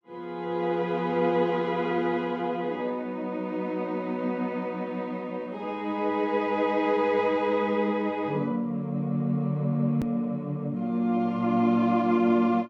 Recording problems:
edit click; at 10 s

